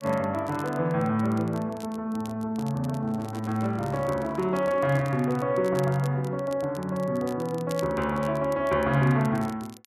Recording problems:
crackling; vinyl, SNR 23 dB
microphone handling noise; from 3 to 5.5 s; peak -11 dB vs average level

